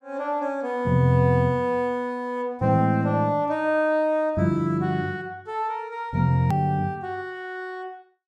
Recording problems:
hard cut with a click; at 6.5 s

